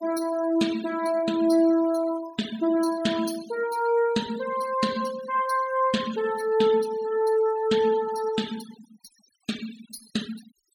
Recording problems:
denoising artefacts; signal-to-artefact ratio 16 dB

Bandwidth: 17.5 kHz